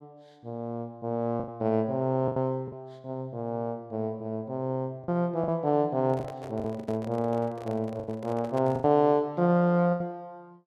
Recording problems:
packet loss; 7% of the sound replaced, filled with the last packet
handling noise; from 6 to 9 s; peak -7 dB vs average level

